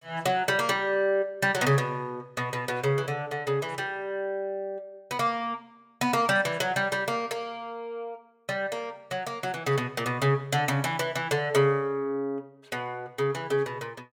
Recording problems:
none

